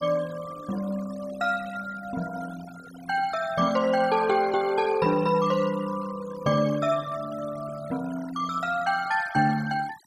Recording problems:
denoising artefacts; signal-to-artefact ratio 17 dB

